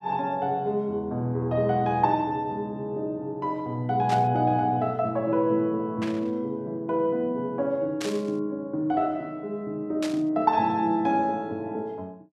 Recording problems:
burst of static; 4 times, first at 4 s; peak -4 dB vs average level

